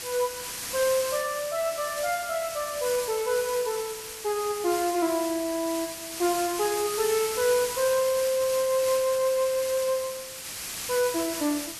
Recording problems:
background hiss; slope +1 dB per octave, SNR 7 dB

